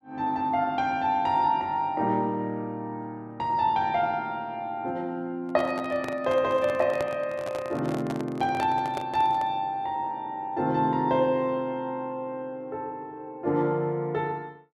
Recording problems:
handling noise; from 5.5 to 9.5 s; peak -2 dB vs average level

